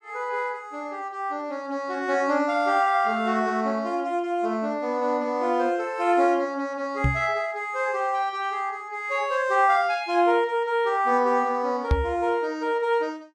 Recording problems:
microphone thump; at 7 s and at 12 s; peak +5 dB vs average level

